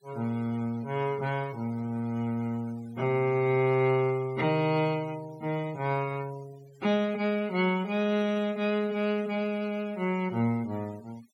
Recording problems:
denoising artefacts; signal-to-artefact ratio 22 dB

